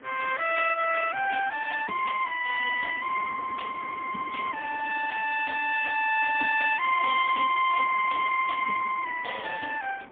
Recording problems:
phone line; 540 Hz to 3.1 kHz, AMR-NB, then MP3
wind on the microphone; below 1.2 kHz, SNR 19 dB

